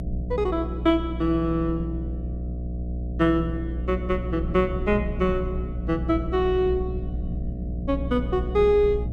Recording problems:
electrical hum; 60 Hz, harmonics up to 660 Hz, SNR 6 dB
rumble; below 160 Hz, SNR 13 dB

